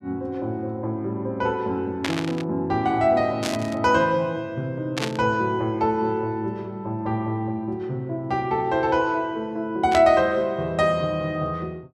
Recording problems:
static burst; 4 times, first at 2 s; peak +1 dB vs average level

